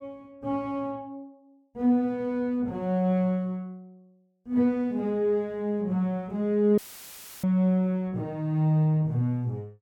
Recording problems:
audio cutting out; at 7 s for 0.5 s; filled with static

